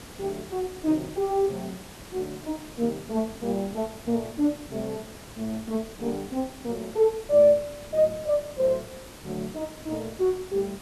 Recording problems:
background hiss; slope -4 dB per octave, SNR 16 dB

